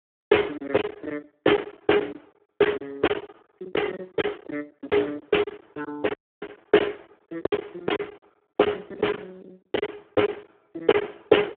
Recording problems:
phone line; 260 Hz to 3.4 kHz, Speex
packet loss; 12% of the sound replaced, filled with silence
audio cutting out; at 6 s

